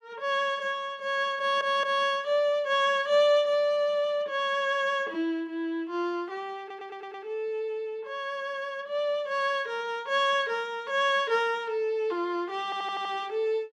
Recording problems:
stutter; at 1.5 s, at 6.5 s and at 13 s

